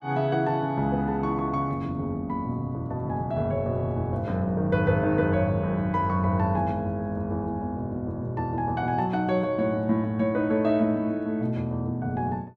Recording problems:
none

